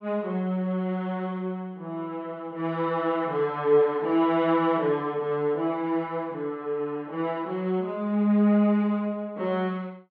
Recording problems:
none

